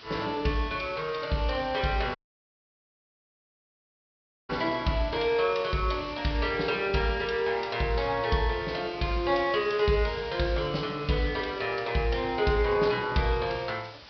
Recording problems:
treble cut off; nothing above 5.5 kHz
hiss; slope -1 dB per octave, SNR 18 dB
dropout; at 2 s for 2.5 s

